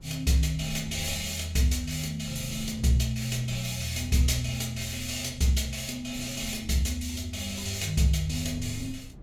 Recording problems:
low-frequency rumble; below 140 Hz, SNR 18 dB

